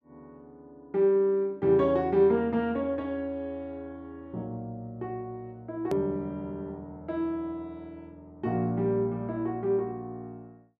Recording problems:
hard cut with a click; at 6 s

